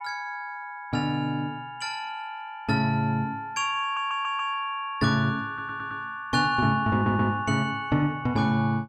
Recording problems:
audio stuttering; at 4 s, at 5.5 s and at 7 s

